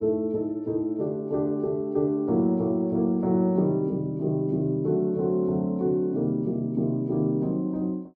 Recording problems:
none

